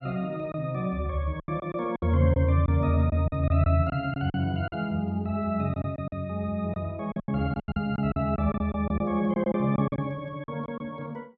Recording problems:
packet loss; 11% of the sound replaced, filled with silence

